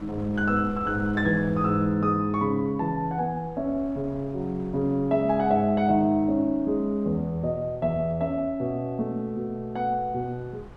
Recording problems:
wind noise; below 400 Hz, SNR 20 dB

